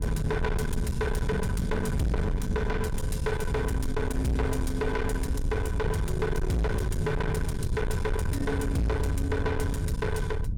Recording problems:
distorted audio; soft clipping, signal-to-distortion ratio 7 dB
rumble; below 140 Hz, SNR 2 dB

